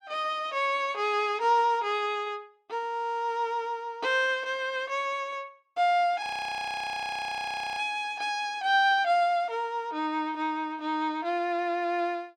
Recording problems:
frozen audio; at 6 s for 1.5 s

